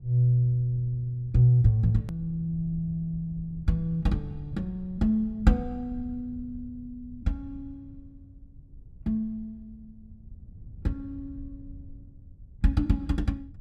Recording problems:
low-frequency rumble; below 100 Hz, SNR 19 dB
edit click; at 2 s

